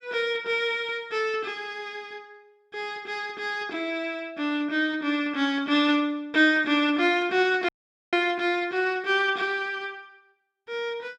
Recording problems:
audio cutting out; at 7.5 s

